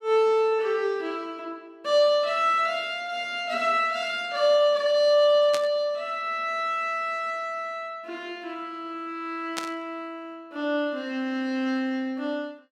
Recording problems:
static burst; at 5.5 s and at 9.5 s; peak -2 dB vs average level

